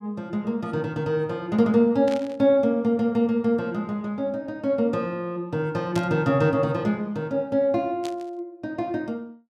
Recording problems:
static burst; at 2 s, at 6 s and at 8 s; peak -8 dB vs average level

